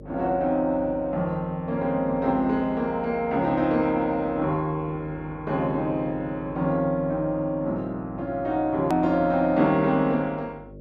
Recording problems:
mains hum; 50 Hz, harmonics up to 600 Hz, SNR 19 dB
hard cut with a click; at 9 s

